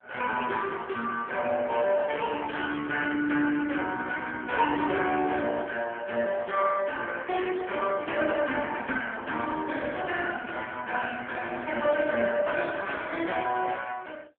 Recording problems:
phone line; 260 Hz to 3.3 kHz, AMR-NB

